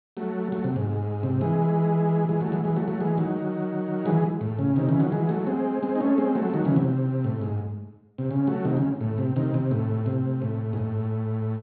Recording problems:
treble missing; nothing above 4.4 kHz

